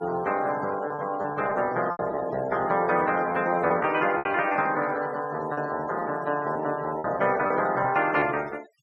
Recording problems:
noise reduction artefacts; signal-to-artefact ratio 19 dB
packet loss; 6% of the sound replaced, filled with repeated pitch periods

